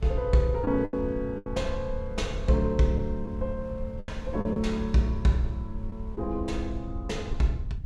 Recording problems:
rumble; below 82 Hz, SNR 8 dB
wind noise; below 150 Hz, SNR 22 dB
lost packets; 5% of the sound replaced, filled with the last packet

